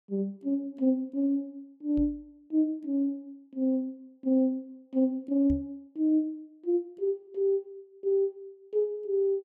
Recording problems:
knock on the microphone; at 2 s and at 5.5 s; peak -2 dB vs average level

